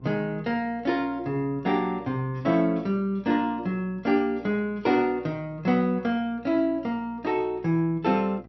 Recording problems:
treble missing; nothing above 5.7 kHz
hum; 60 Hz, harmonics up to 840 Hz, SNR 25 dB

